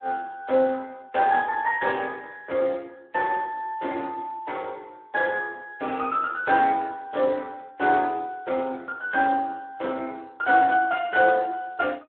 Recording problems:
phone line; 220 Hz to 3.5 kHz, Speex

